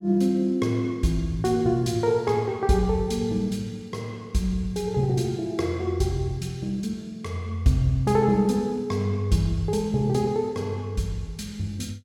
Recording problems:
none

